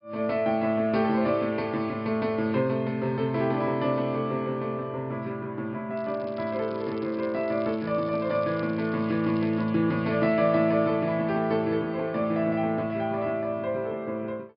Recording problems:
treble missing; nothing above 5.5 kHz
crackle; from 6 to 9.5 s; loose cable, SNR 27 dB

